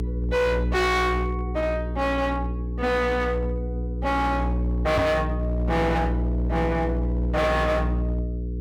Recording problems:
distorted audio; hard clipping, signal-to-distortion ratio 8 dB
hum; 60 Hz, harmonics up to 480 Hz, SNR 3 dB
microphone bump; at 5 s; peak +5 dB vs average level

